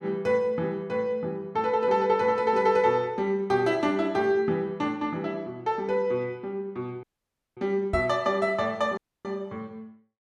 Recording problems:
dropout; at 7 s for 0.5 s and at 9 s
knock on the microphone; at 8 s; peak -1 dB vs average level

